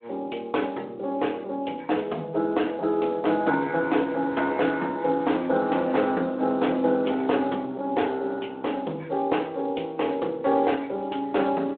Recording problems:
telephone audio; 240 Hz to 3.6 kHz, Speex

